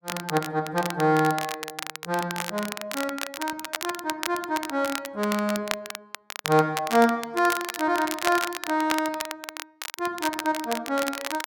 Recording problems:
crackle; vinyl, SNR 7 dB

